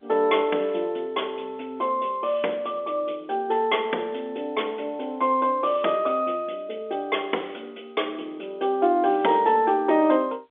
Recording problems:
telephone audio; 280 Hz to 3.5 kHz, G.711

